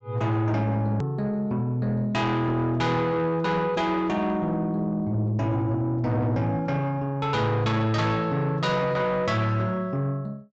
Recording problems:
treble cut off; nothing above 8 kHz
distorted audio; soft clipping, signal-to-distortion ratio 11 dB
edit click; at 1 s

